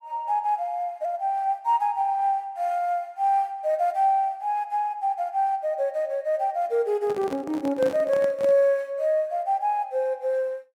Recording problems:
handling noise; from 7 to 8.5 s; peak -4 dB vs average level

